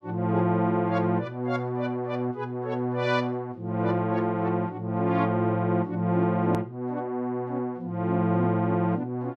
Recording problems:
click at an edit; at 6.5 s

